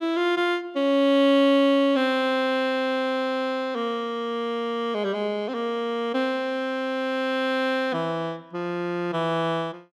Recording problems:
none

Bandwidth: 15 kHz